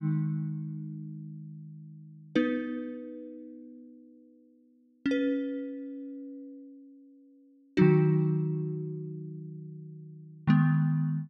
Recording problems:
none

